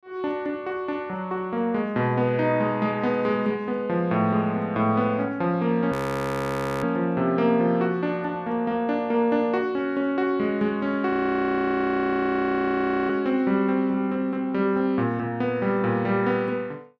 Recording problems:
frozen audio; at 6 s for 1 s and at 11 s for 2 s

